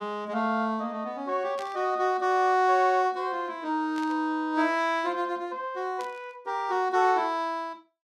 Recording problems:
burst of static; at 1.5 s, at 4 s and at 6 s; peak -12 dB vs average level

